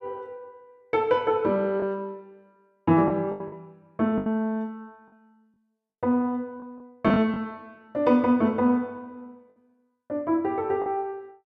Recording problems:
lost packets; 5% of the sound replaced, filled with the last packet

